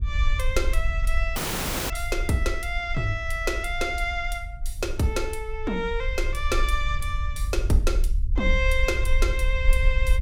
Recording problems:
rumble; below 54 Hz, SNR 1 dB
audio cutting out; at 1.5 s for 0.5 s

